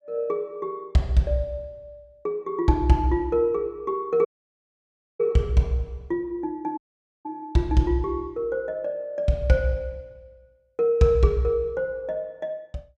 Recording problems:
audio cutting out; at 4.5 s for 1 s and at 7 s

